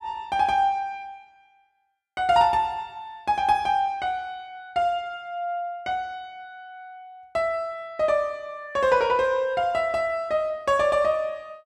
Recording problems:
none

